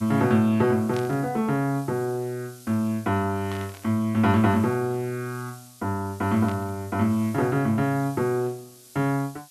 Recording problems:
hiss; slope +4 dB per octave, SNR 23 dB
burst of static; at 1 s, at 3.5 s and at 6.5 s; peak -10 dB vs average level

